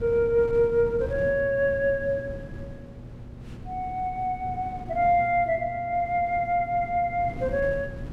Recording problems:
electrical hum; 60 Hz, harmonics up to 1.1 kHz, SNR 20 dB
wind on the microphone; below 240 Hz, SNR 15 dB

